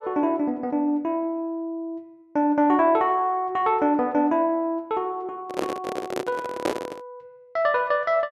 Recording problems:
handling noise; from 5.5 to 7 s; peak +2 dB vs average level

